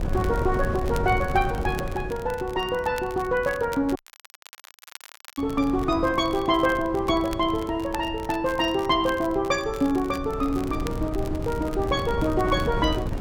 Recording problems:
wind on the microphone; below 230 Hz, SNR 9 dB
crackle; vinyl, SNR 20 dB
dropout; at 4 s for 1.5 s

